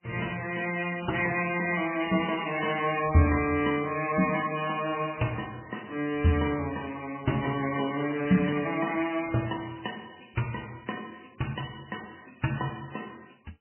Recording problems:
lossy compression; MP3, log-spectral distance 8 dB, nothing above 2.4 kHz

